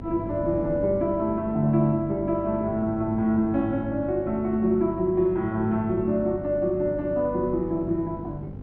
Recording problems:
electrical hum; 50 Hz, harmonics up to 800 Hz, SNR 14 dB
wind noise; below 310 Hz, SNR 15 dB

